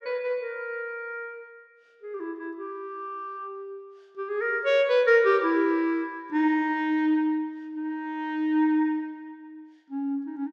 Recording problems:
none

